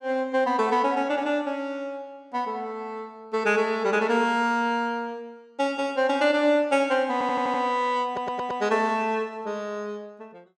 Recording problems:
audio stuttering; at 7 s and at 8 s

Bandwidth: 15.5 kHz